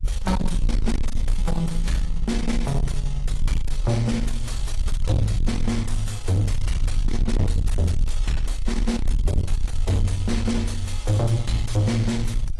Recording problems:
lossy compression; AAC, log-spectral distance 2 dB, nothing above 11.3 kHz
distortion; soft clipping, signal-to-distortion ratio 7 dB
low-frequency rumble; below 52 Hz, SNR 3 dB

